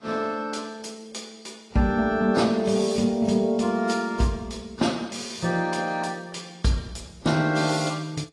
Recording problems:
codec artefacts; AAC, log-spectral distance 4 dB

